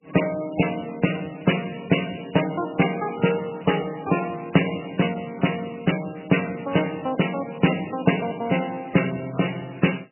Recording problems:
lossy compression; MP3, log-spectral distance 9 dB, nothing above 2.9 kHz

